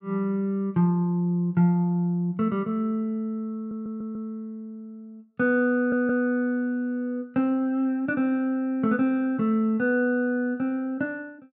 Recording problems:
audio stuttering; at 3.5 s and at 6 s

